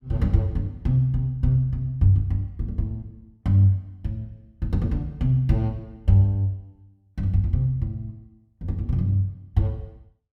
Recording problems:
none

